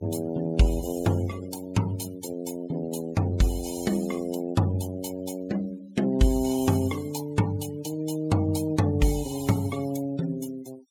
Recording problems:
noise reduction artefacts; signal-to-artefact ratio 18 dB

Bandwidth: 17 kHz